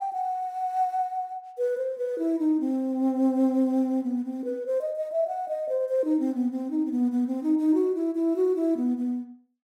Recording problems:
none

